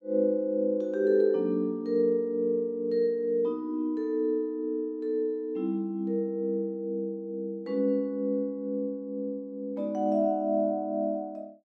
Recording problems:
none

